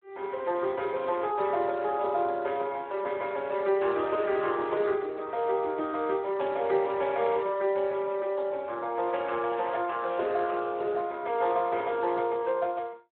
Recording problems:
telephone audio; 320 Hz to 2.8 kHz, Speex

